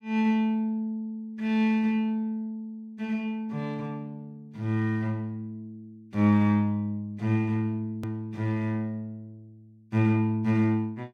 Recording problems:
edit click; at 8 s

